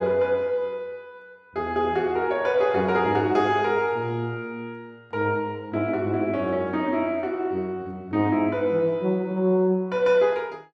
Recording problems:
none

